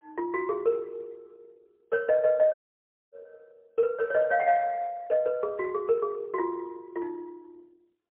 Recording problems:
phone line; 300 Hz to 2.6 kHz, AMR-NB, then MP3
audio cutting out; at 2.5 s for 0.5 s

